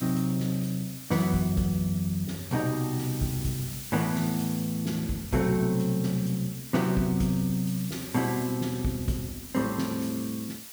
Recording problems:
background hiss; slope +2 dB per octave, SNR 11 dB

